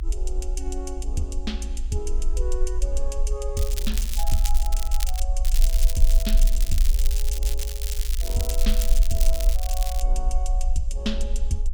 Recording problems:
rumble; below 44 Hz, strongest tone 20 Hz, SNR -7 dB
crackling; from 3.5 to 5 s and from 5.5 to 10 s; loose cable, SNR 1 dB

